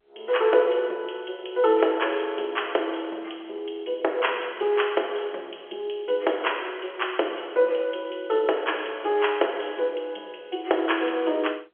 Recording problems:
phone line; 300 Hz to 3.4 kHz, G.711

